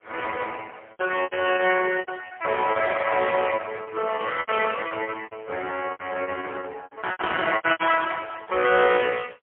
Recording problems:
phone line; 320 Hz to 3.2 kHz, AMR-NB, then MP3
lost packets; 14% of the sound replaced, filled with repeated pitch periods

